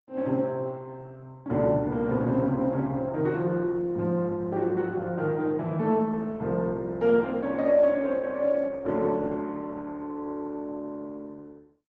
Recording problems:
lossy codec; Opus, log-spectral distance 2 dB

